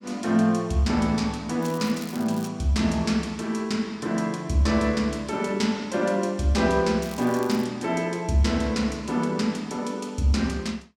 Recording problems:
crackle; at 1.5 s and at 7 s; loose cable, SNR 20 dB

